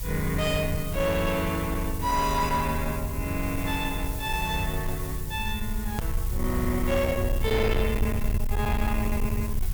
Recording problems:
distorted audio; soft clipping, signal-to-distortion ratio 10 dB
hiss; slope -1 dB per octave, SNR 10 dB
low-frequency rumble; below 88 Hz, SNR 4 dB
edit click; at 6 s

